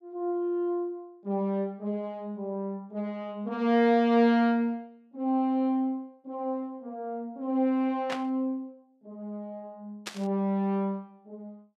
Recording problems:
burst of static; at 8 s and at 10 s; peak -2 dB vs average level

